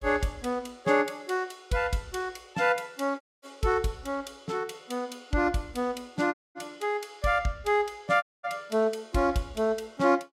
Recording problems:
audio cutting out; at 3 s, at 6.5 s and at 8 s

